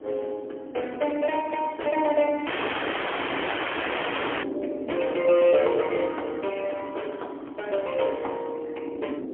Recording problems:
telephone audio; 260 Hz to 3.3 kHz, AMR-NB, then MP3
wind noise; below 390 Hz, SNR 12 dB
dropout; at 2.5 s for 2 s

